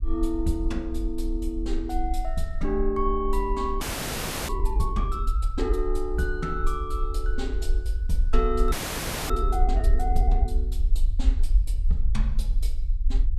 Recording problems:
rumble; below 50 Hz, SNR -2 dB
frozen audio; at 4 s for 0.5 s and at 8.5 s for 0.5 s

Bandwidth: 14 kHz